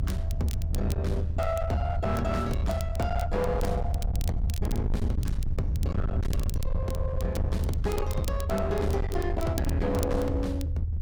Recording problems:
distortion; hard clipping, uneven, signal-to-distortion ratio 6 dB
rumble; below 90 Hz, SNR 0 dB
crackling; vinyl, SNR 16 dB

